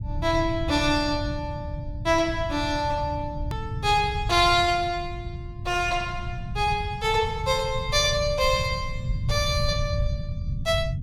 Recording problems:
rumble; below 130 Hz, SNR 8 dB
hard cut with a click; at 3.5 s

